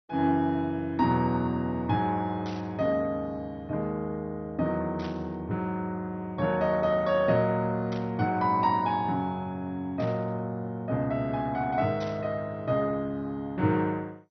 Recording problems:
lossy compression; MP2, log-spectral distance 2 dB
burst of static; 5 times, first at 2.5 s; peak -11 dB vs average level

